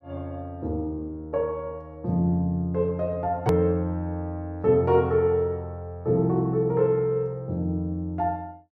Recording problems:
edit click; at 3.5 s

